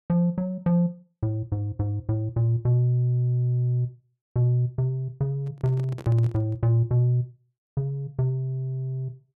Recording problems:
handling noise; from 5.5 to 6.5 s; peak -11 dB vs average level

